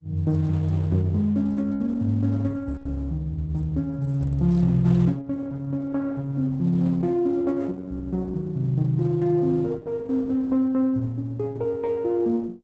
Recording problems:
codec artefacts; Opus, log-spectral distance 2 dB, nothing above 8 kHz

